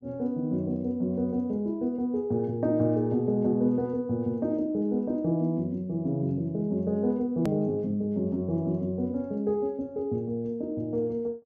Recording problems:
treble cut off; nothing above 7.5 kHz
click at an edit; at 7.5 s

